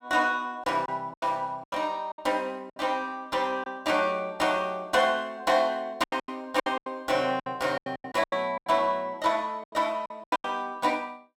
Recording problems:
lost packets; 12% of the sound replaced, filled with silence

